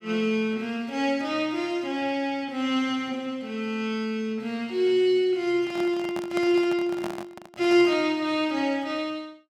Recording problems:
handling noise; from 5.5 to 8 s; peak -4 dB vs average level

